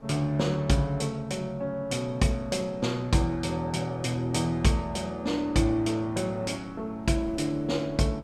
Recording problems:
wind noise; below 460 Hz, SNR 22 dB

